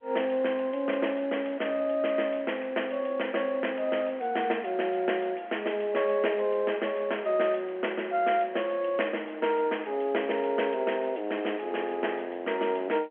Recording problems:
phone line; 280 Hz to 3.3 kHz, G.711

